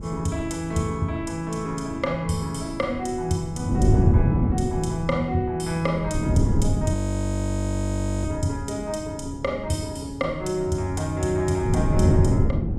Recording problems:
wind noise; below 200 Hz, SNR -1 dB
frozen audio; at 7 s for 1.5 s

